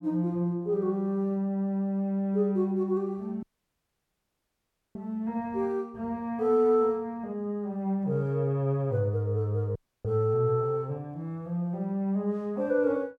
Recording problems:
audio cutting out; at 3.5 s for 1.5 s and at 10 s

